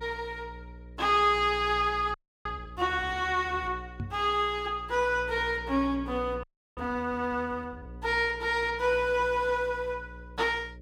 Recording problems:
hum; 60 Hz, harmonics up to 600 Hz, SNR 17 dB
frozen audio; at 2 s and at 6.5 s
knock on the microphone; at 4 s; peak -4 dB vs average level

